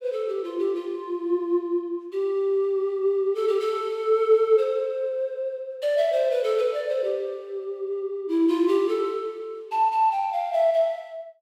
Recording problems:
none

